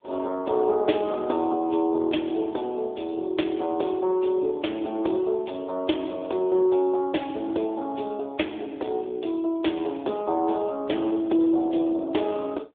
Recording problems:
telephone audio; 280 Hz to 3.5 kHz, AMR-NB

